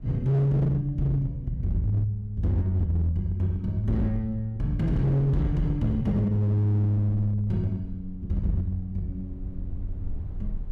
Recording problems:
distorted audio; hard clipping, signal-to-distortion ratio 11 dB
rumble; below 76 Hz, SNR 17 dB

